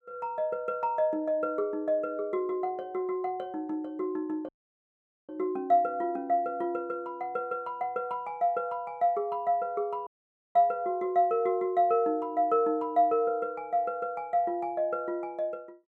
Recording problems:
audio cutting out; at 4.5 s for 1 s and at 10 s

